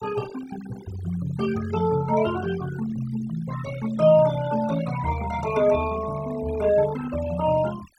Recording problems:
denoising artefacts; signal-to-artefact ratio 15 dB

